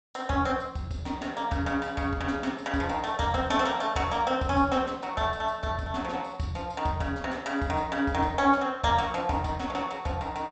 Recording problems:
low-pass filter; nothing above 8 kHz

